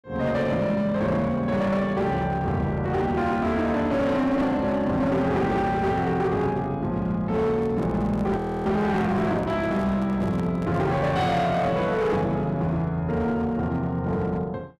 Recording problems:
distorted audio; hard clipping, uneven, signal-to-distortion ratio 10 dB
microphone handling noise; from 7.5 to 11 s; peak -11 dB vs average level
audio freezing; at 8.5 s

